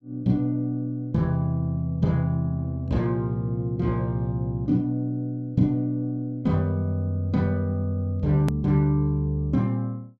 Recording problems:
hard cut with a click; at 8.5 s

